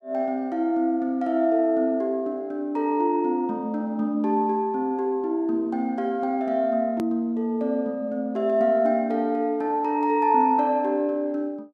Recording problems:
click at an edit; at 7 s

